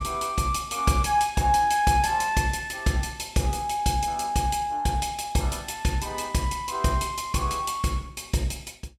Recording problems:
none

